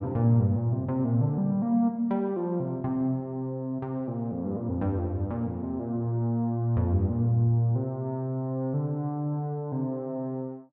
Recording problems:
none

